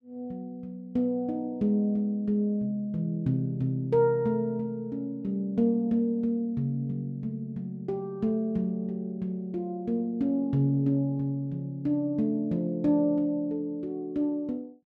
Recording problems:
none

